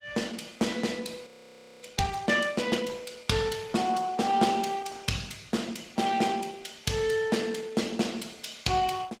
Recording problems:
lossy codec; Opus, log-spectral distance 5 dB
audio freezing; at 1.5 s for 0.5 s

